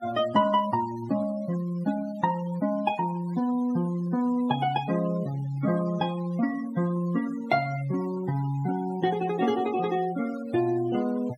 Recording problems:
noise reduction artefacts; signal-to-artefact ratio 18 dB

